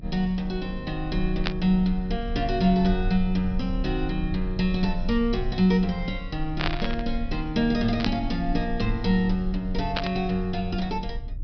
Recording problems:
treble missing; nothing above 5.5 kHz
rumble; below 44 Hz, strongest tone 34 Hz, SNR 9 dB
static burst; 4 times, first at 1.5 s; peak +3 dB vs average level

